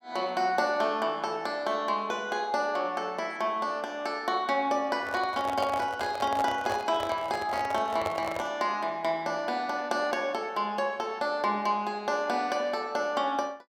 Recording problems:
handling noise; from 5 to 8.5 s; peak +1 dB vs average level

